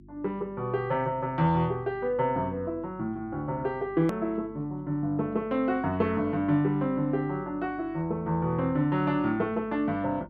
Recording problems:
hum; 50 Hz, harmonics up to 350 Hz, SNR 22 dB
hard cut with a click; at 4 s

